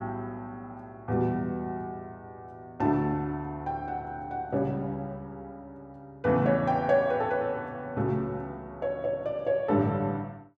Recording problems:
none

